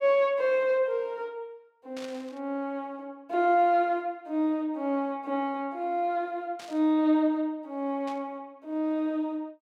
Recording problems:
burst of static; at 2 s, at 6.5 s and at 8 s; peak -12 dB vs average level

